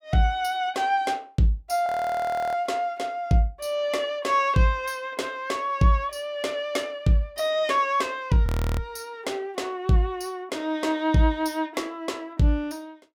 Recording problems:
frozen audio; at 2 s for 0.5 s and at 8.5 s

